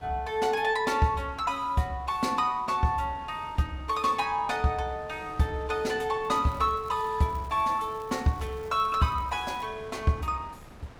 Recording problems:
wind on the microphone; below 1 kHz, SNR 20 dB
crackling; from 6 to 9.5 s; loose cable, SNR 29 dB

